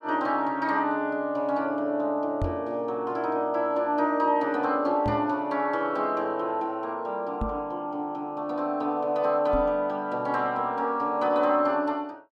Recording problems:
knock on the microphone; 4 times, first at 2.5 s; peak 0 dB vs average level

